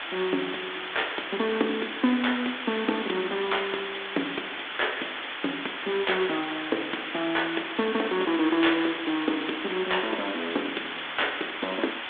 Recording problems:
phone line; 240 Hz to 3.6 kHz, G.726
background hiss; SNR 4 dB

